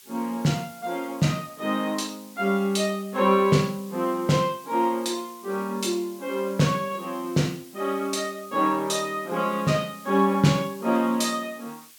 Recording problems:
background hiss; slope +4 dB per octave, SNR 22 dB

